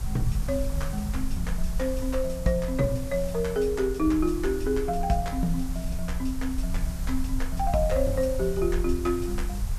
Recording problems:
background hiss; SNR 16 dB
low-frequency rumble; below 60 Hz, SNR 5 dB

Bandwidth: 14 kHz